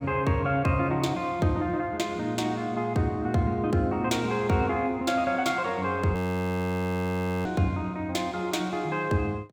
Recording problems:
frozen audio; at 6 s for 1.5 s

